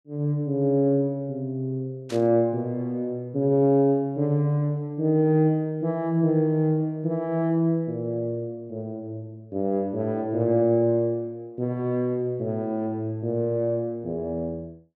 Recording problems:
burst of static; at 2 s; peak -11 dB vs average level

